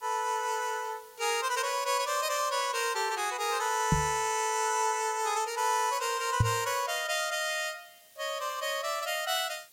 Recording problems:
background hiss; SNR 26 dB
microphone bump; at 4 s and at 6.5 s; peak +8 dB vs average level

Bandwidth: 16.5 kHz